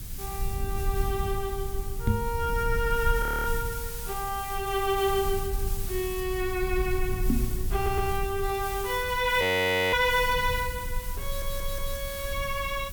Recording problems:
background hiss; slope +3 dB per octave, SNR 10 dB
rumble; below 72 Hz, SNR 7 dB
microphone thump; at 2 s and at 7.5 s; peak +6 dB vs average level
audio freezing; at 3 s and at 9.5 s for 0.5 s
stutter; at 8 s and at 11 s

